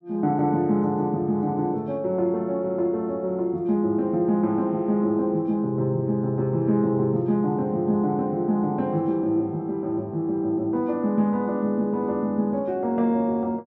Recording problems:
none

